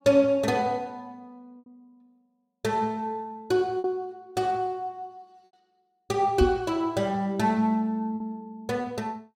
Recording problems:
packet loss; 3% of the sound replaced, filled with repeated pitch periods
microphone bump; at 6.5 s; peak +6 dB vs average level

